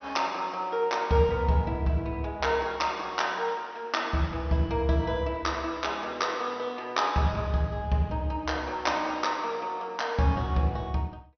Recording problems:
low-pass filter; nothing above 6.1 kHz

